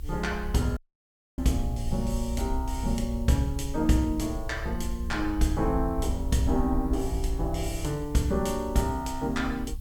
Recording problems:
hiss; slope +3 dB per octave, SNR 27 dB
low-frequency rumble; below 62 Hz, SNR 6 dB
audio cutting out; at 1 s for 0.5 s

